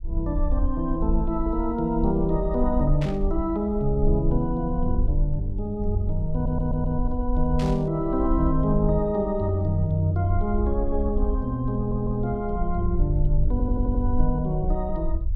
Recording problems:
low-frequency rumble; below 56 Hz, SNR 4 dB
static burst; at 3 s and at 7.5 s; peak -8 dB vs average level
stutter; at 6.5 s, at 12 s and at 14 s

